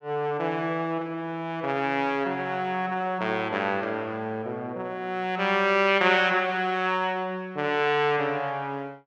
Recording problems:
none

